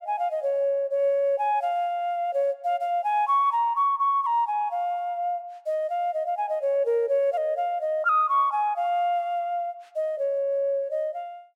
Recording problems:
none

